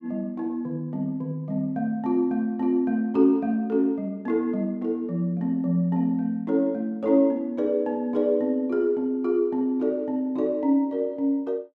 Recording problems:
none

